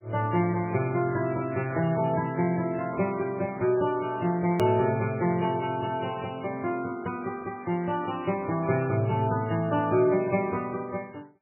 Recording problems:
codec artefacts; AAC, then MP3, log-spectral distance 3 dB, nothing above 18.9 kHz
hard cut with a click; at 4.5 s

